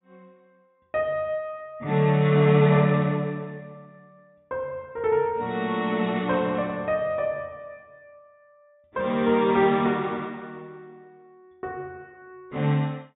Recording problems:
treble cut off; nothing above 3.8 kHz

